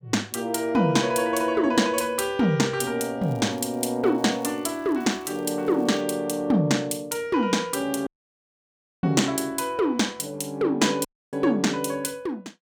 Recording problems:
crackle; from 3 to 6 s; loose cable, SNR 29 dB
audio cutting out; at 8 s for 1 s and at 11 s

